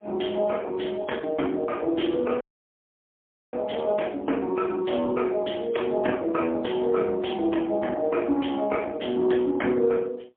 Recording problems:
phone line; 220 Hz to 3.5 kHz, AMR-NB, then MP3
audio cutting out; at 2.5 s for 1 s

